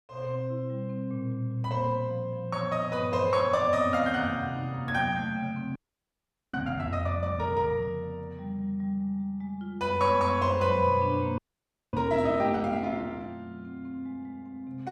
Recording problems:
audio freezing; at 6 s for 1 s and at 11 s for 0.5 s

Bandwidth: 14 kHz